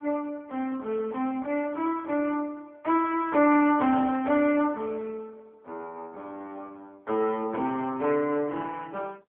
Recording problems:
phone line; 220 Hz to 3.1 kHz, AMR-NB

